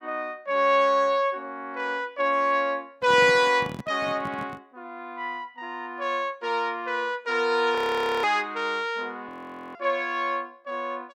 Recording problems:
handling noise; from 3 to 4.5 s; peak -6 dB vs average level
frozen audio; at 8 s and at 9.5 s

